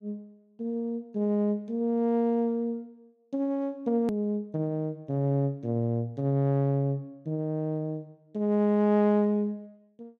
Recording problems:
click at an edit; at 4 s

